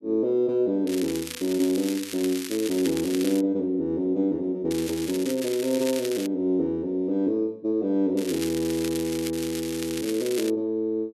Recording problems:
crackle; 4 times, first at 1 s; loose cable, SNR 10 dB

